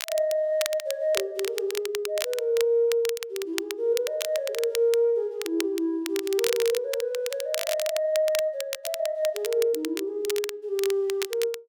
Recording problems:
crackle; vinyl, SNR 9 dB

